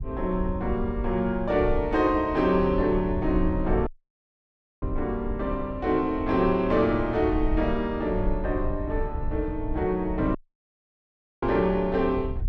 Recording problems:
low-frequency rumble; below 74 Hz, SNR 9 dB
audio cutting out; at 4 s for 1 s and at 10 s for 1 s

